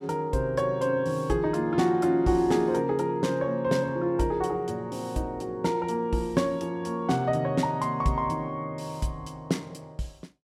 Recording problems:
none

